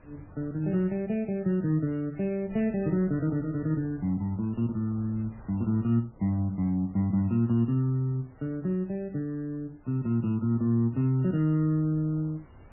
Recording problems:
lossy compression; MP3, then AAC, log-spectral distance 2 dB, nothing above 2.4 kHz
wind noise; below 380 Hz, SNR 25 dB

